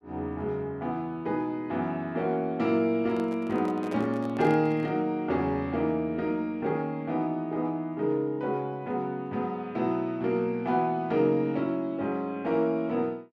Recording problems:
microphone handling noise; from 3 to 5 s; peak -6 dB vs average level

